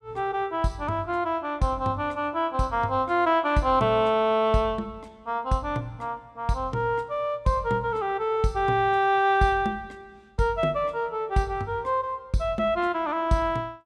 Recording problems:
none

